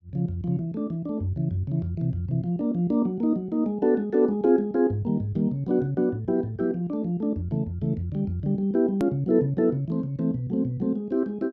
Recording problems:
edit click; at 9 s

